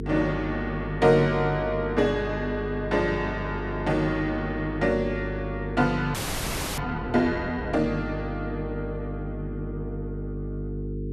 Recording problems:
hum; 50 Hz, harmonics up to 450 Hz, SNR 7 dB
audio freezing; at 6 s for 0.5 s

